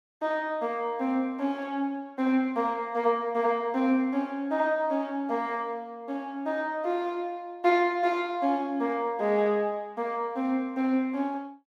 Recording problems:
none

